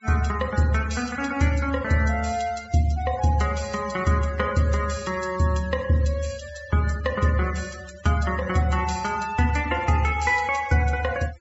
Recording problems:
low-pass filter; nothing above 8 kHz
denoising artefacts; signal-to-artefact ratio 19 dB

